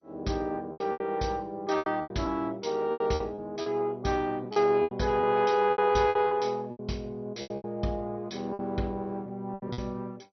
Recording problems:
lossy codec; MP2, log-spectral distance 3 dB, nothing above 6 kHz
lost packets; 13% of the sound replaced, filled with repeated pitch periods

